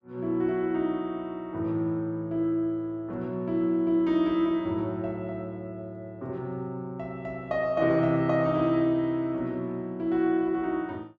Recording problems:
none

